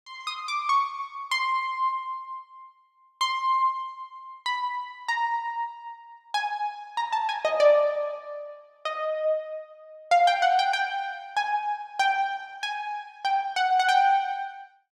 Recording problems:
none

